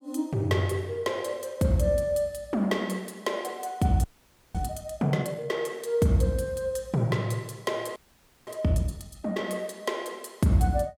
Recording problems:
audio freezing; at 4 s for 0.5 s and at 8 s for 0.5 s

